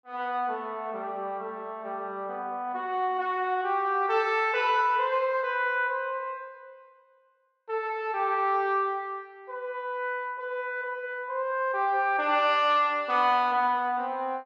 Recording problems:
none

